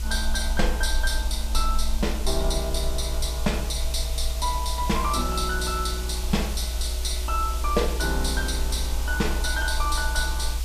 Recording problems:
hiss; SNR 9 dB
low-frequency rumble; below 60 Hz, SNR 2 dB

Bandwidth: 14.5 kHz